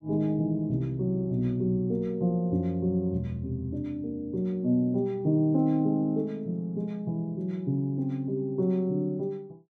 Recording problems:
none

